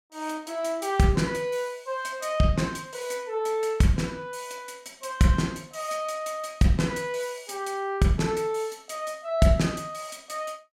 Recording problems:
none

